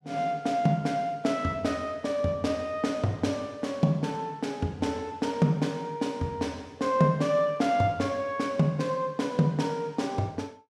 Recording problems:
none

